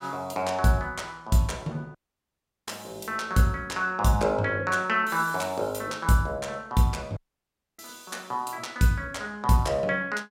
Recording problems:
dropout; at 2 s for 0.5 s and at 7 s for 0.5 s

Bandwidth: 16 kHz